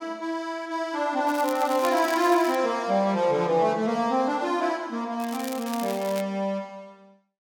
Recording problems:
crackle; from 1.5 to 2.5 s and from 5 to 6 s; loose cable, SNR 14 dB

